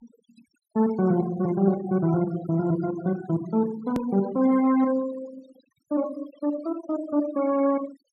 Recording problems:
noise reduction artefacts; signal-to-artefact ratio 17 dB
edit click; at 4 s

